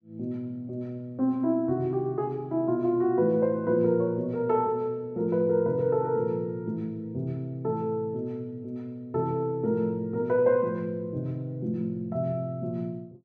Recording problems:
none

